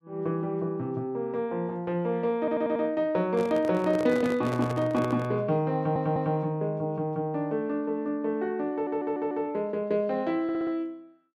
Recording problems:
audio stuttering; 4 times, first at 2.5 s
handling noise; from 3.5 to 5.5 s; peak -3 dB vs average level

